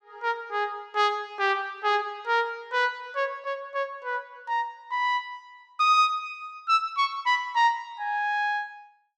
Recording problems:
none

